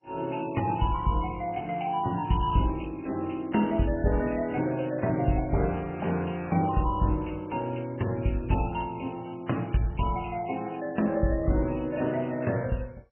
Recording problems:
lossy compression; MP3, then MP2, log-spectral distance 5 dB, nothing above 2.9 kHz

